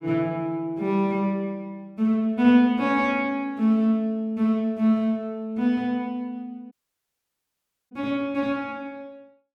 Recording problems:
audio cutting out; at 6.5 s for 1 s

